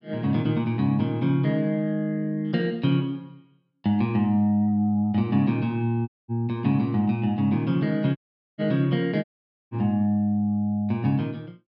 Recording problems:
dropout; at 6 s, at 8 s and at 9 s

